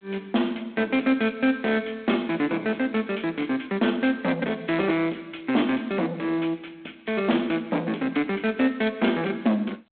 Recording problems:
telephone audio; 220 Hz to 3.7 kHz, G.726
distortion; soft clipping, signal-to-distortion ratio 10 dB

